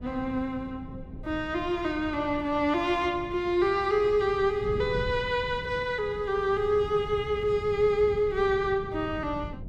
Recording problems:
wind noise; below 180 Hz, SNR 14 dB

